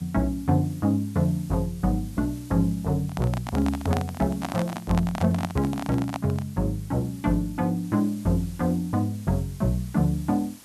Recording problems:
background hiss; slope -1 dB per octave, SNR 23 dB
handling noise; from 3 to 6.5 s; peak 0 dB vs average level

